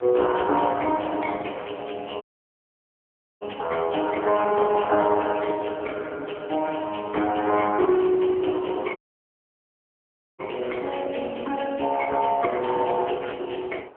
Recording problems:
phone line; 320 Hz to 3.2 kHz, AMR-NB
wind on the microphone; below 1 kHz, SNR 22 dB
dropout; at 2 s for 1 s and at 9 s for 1.5 s

